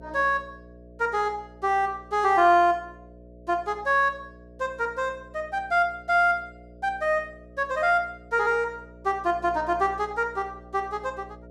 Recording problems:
hum; 60 Hz, harmonics up to 660 Hz, SNR 22 dB

